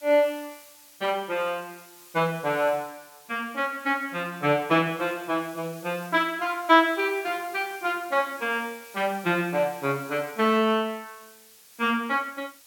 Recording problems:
background hiss; slope +2 dB per octave, SNR 22 dB

